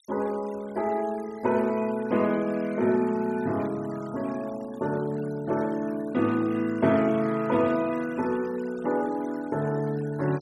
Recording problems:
noise reduction artefacts; signal-to-artefact ratio 22 dB

